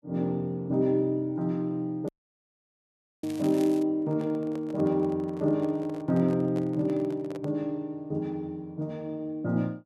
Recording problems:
crackling; from 2 to 4 s; loose cable, SNR 19 dB
dropout; at 2 s for 1 s
microphone handling noise; from 4 to 7.5 s; peak -9 dB vs average level

